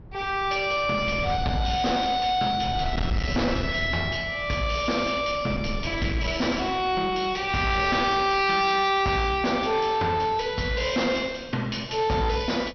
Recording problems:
low-pass filter; nothing above 6 kHz
distortion; hard clipping, uneven, signal-to-distortion ratio 10 dB
wind noise; below 200 Hz, SNR 12 dB

